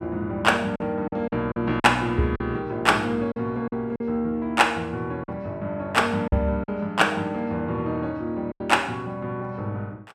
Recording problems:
packet loss; 6% of the sound replaced, filled with silence

